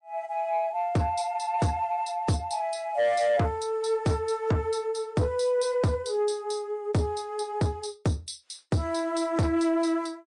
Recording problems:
lossy compression; MP3, log-spectral distance 2 dB, nothing above 8.5 kHz
distortion; soft clipping, signal-to-distortion ratio 11 dB

